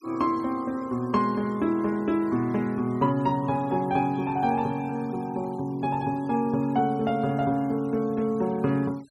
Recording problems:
denoising artefacts; signal-to-artefact ratio 26 dB

